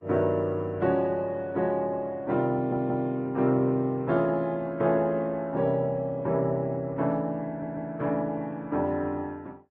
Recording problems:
codec artefacts; Opus, then Vorbis, log-spectral distance 2 dB
audio stuttering; at 2.5 s and at 7.5 s

